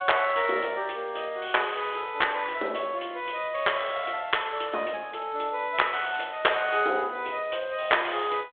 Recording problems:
phone line; 300 Hz to 3.5 kHz, G.726

